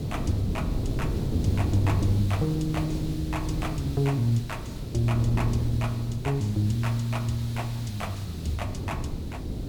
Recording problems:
hiss; SNR 18 dB
wind on the microphone; below 240 Hz, SNR 5 dB

